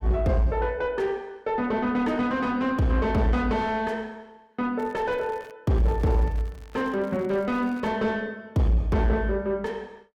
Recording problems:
distortion; soft clipping, signal-to-distortion ratio 10 dB
crackling; at 5 s and from 6 to 8 s; loose cable, SNR 26 dB

